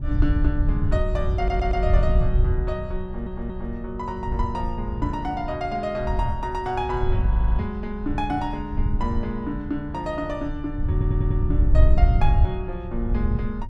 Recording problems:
wind on the microphone; below 80 Hz, SNR -3 dB
stutter; 4 times, first at 1.5 s

